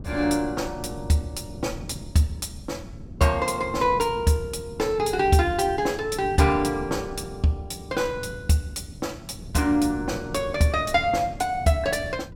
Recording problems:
wind on the microphone; below 200 Hz, SNR 15 dB

